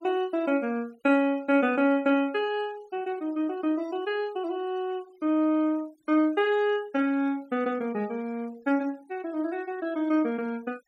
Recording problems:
noise reduction artefacts; signal-to-artefact ratio 27 dB

